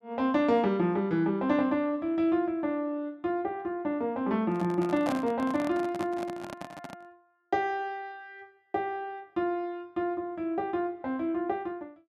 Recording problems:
microphone handling noise; from 4.5 to 7 s; peak -1 dB vs average level

